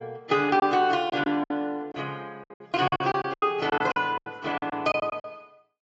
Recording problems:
lossy codec; AAC, log-spectral distance 2 dB, nothing above 7.6 kHz
lost packets; 15% of the sound replaced, filled with silence

